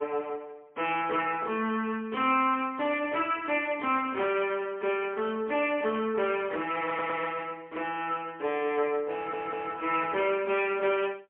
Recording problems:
phone line; 240 Hz to 3.2 kHz, AMR-NB, then MP3
stutter; at 7 s and at 9 s

